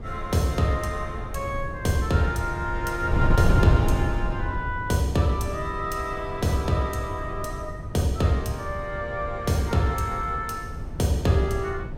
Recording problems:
wind noise; below 150 Hz, SNR 5 dB

